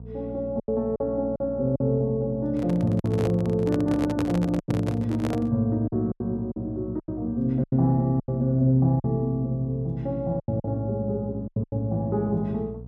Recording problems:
electrical hum; 60 Hz, harmonics up to 480 Hz, SNR 15 dB
lost packets; 8% of the sound replaced, filled with silence
microphone handling noise; from 2.5 to 5.5 s; peak -1 dB vs average level

